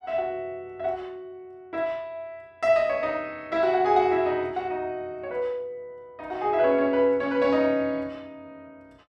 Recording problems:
none

